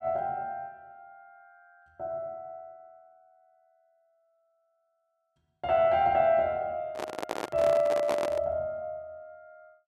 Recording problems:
handling noise; from 7 to 8.5 s; peak 0 dB vs average level

